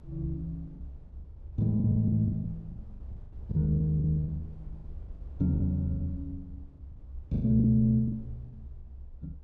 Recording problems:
rumble; below 74 Hz, SNR 17 dB
packet loss; 13% of the sound replaced, filled with the last packet

